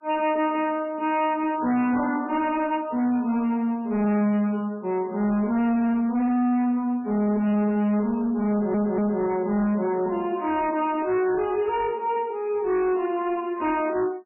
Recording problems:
lossy compression; MP3, log-spectral distance 2 dB, nothing above 2.5 kHz
distorted audio; hard clipping, signal-to-distortion ratio 10 dB
stutter; at 8.5 s

